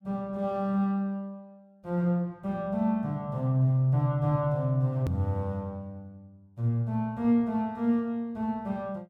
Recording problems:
click at an edit; at 5 s

